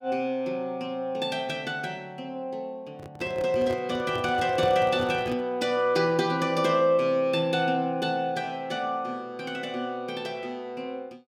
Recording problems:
microphone handling noise; from 3 to 5.5 s; peak -3 dB vs average level

